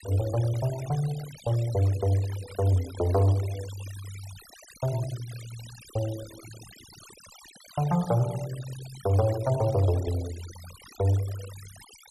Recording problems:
noise reduction artefacts; signal-to-artefact ratio 18 dB

